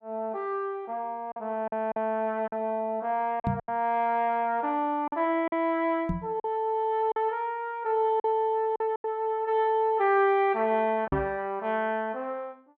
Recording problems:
lost packets; 5% of the sound replaced, filled with silence
knock on the microphone; at 3.5 s, at 6 s and at 11 s; peak +2 dB vs average level

